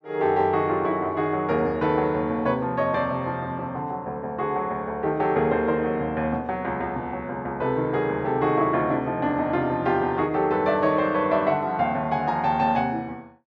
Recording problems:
none

